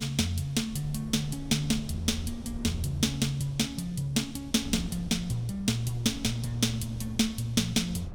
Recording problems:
rumble; below 98 Hz, SNR 17 dB
wind on the microphone; below 170 Hz, SNR 17 dB

